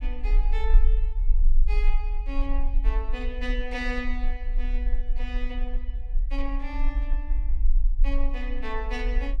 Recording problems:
low-frequency rumble; below 38 Hz, strongest tone 22 Hz, SNR -8 dB

